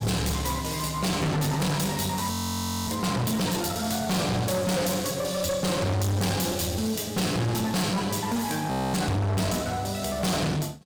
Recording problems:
distorted audio; hard clipping, uneven, signal-to-distortion ratio 5 dB
frozen audio; at 2.5 s for 0.5 s and at 8.5 s

